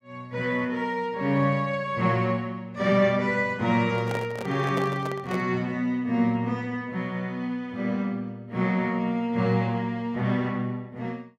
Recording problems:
microphone handling noise; from 4 to 5.5 s; peak -2 dB vs average level

